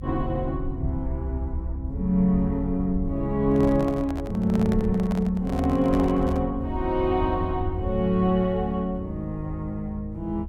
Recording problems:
low-frequency rumble; below 78 Hz, SNR 9 dB
handling noise; from 3.5 to 6.5 s; peak -6 dB vs average level

